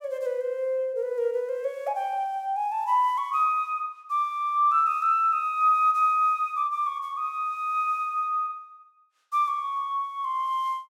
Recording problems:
none

